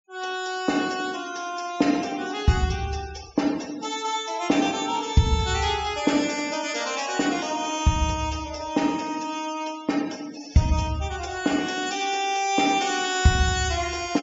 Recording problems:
low-pass filter; nothing above 7.5 kHz
denoising artefacts; signal-to-artefact ratio 18 dB

